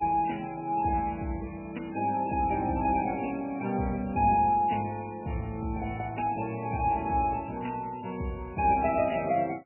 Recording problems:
lossy codec; MP3, log-spectral distance 4 dB, nothing above 2.5 kHz

